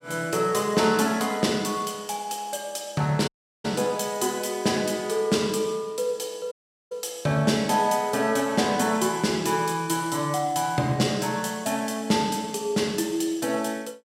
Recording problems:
audio cutting out; at 3.5 s and at 6.5 s

